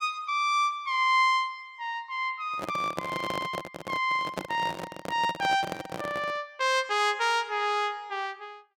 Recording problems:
microphone handling noise; from 2.5 to 6.5 s; peak -1 dB vs average level

